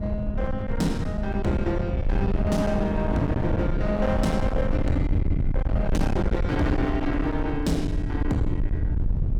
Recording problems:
distorted audio; hard clipping, uneven, signal-to-distortion ratio 6 dB
low-frequency rumble; below 110 Hz, SNR 2 dB
wind noise; below 200 Hz, SNR 8 dB

